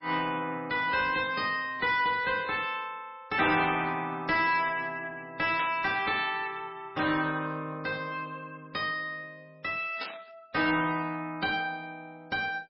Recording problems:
lossy compression; MP3, log-spectral distance 3 dB, nothing above 5 kHz
distorted audio; soft clipping, signal-to-distortion ratio 10 dB
burst of static; at 5.5 s and at 10 s; peak -3 dB vs average level

